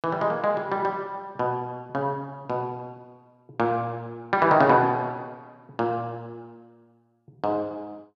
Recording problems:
none

